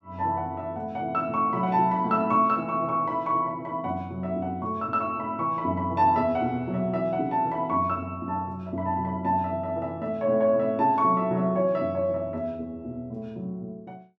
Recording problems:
none

